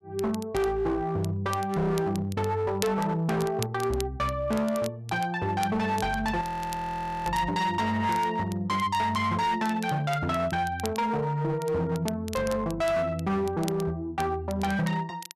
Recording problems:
distortion; hard clipping, signal-to-distortion ratio 11 dB
crackle; vinyl, SNR 17 dB
audio freezing; at 6.5 s for 1 s

